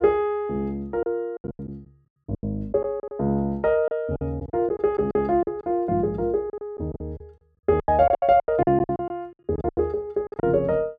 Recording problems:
lost packets; 14% of the sound replaced, filled with silence

